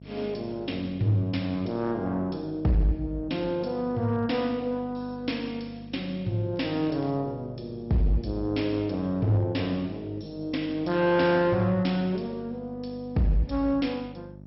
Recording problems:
lossy codec; MP2, log-spectral distance 4 dB, nothing above 5.5 kHz
distorted audio; hard clipping, signal-to-distortion ratio 12 dB
hum; 50 Hz, harmonics up to 650 Hz, SNR 18 dB
crackling; at 6.5 s; loose cable, SNR 28 dB

